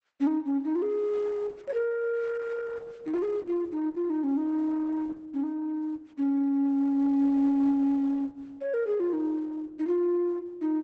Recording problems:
codec artefacts; Opus, log-spectral distance 2 dB, nothing above 7.8 kHz

